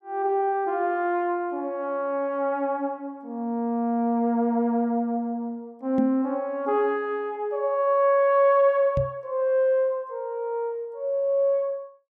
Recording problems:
knock on the microphone; at 6 s and at 9 s; peak +1 dB vs average level

